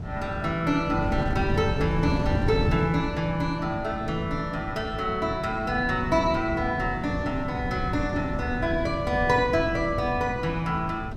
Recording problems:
wind noise; below 210 Hz, SNR 5 dB

